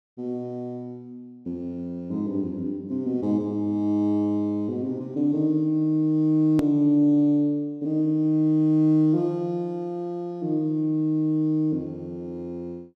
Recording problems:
click at an edit; at 6.5 s

